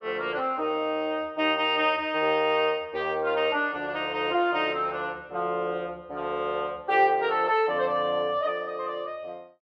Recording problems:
none

